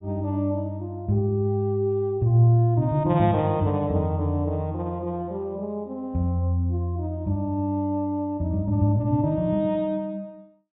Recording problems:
treble missing; nothing above 4 kHz

